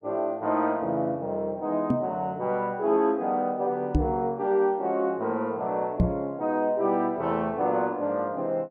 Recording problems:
microphone thump; at 2 s, at 4 s and at 6 s; peak +8 dB vs average level

